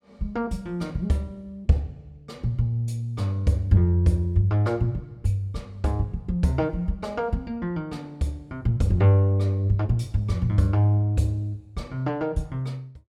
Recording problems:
none

